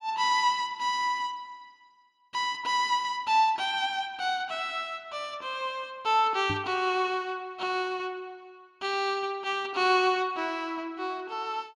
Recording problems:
microphone bump; at 6.5 s; peak -2 dB vs average level

